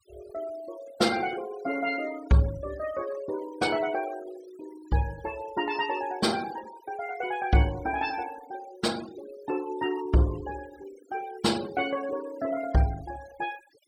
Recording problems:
denoising artefacts; signal-to-artefact ratio 17 dB

